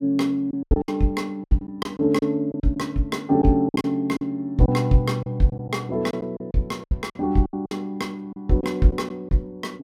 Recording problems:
packet loss; 11% of the sound replaced, filled with silence

